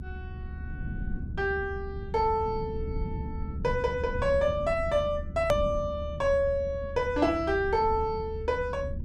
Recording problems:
low-frequency rumble; below 140 Hz, SNR 9 dB
click at an edit; at 5.5 s

